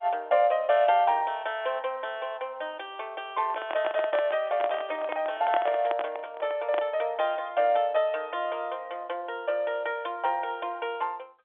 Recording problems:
phone line; 370 Hz to 3.5 kHz, G.711
handling noise; from 3.5 to 7 s; peak +2 dB vs average level

